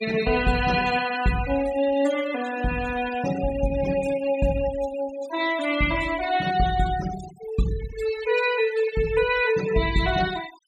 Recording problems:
noise reduction artefacts; signal-to-artefact ratio 13 dB

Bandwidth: 14.5 kHz